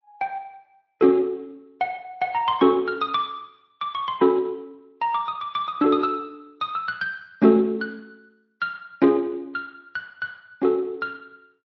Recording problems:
lossy codec; MP3, then Speex, log-spectral distance 2 dB

